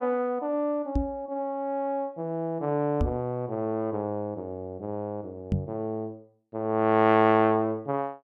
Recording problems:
microphone bump; at 1 s, at 3 s and at 5.5 s; peak +4 dB vs average level

